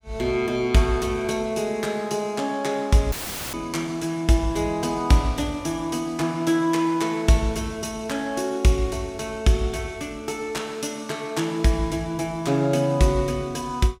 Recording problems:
audio cutting out; at 3 s; filled with static

